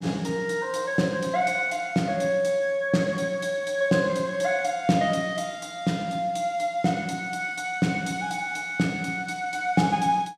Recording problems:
none

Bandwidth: 15 kHz